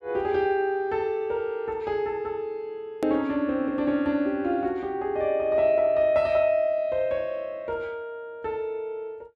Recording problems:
click at an edit; at 3 s

